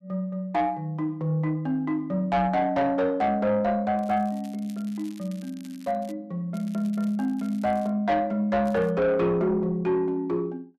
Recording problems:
distorted audio; soft clipping, signal-to-distortion ratio 11 dB
crackle; from 4 to 6 s, from 6.5 to 8 s and at 8.5 s; loose cable, SNR 27 dB

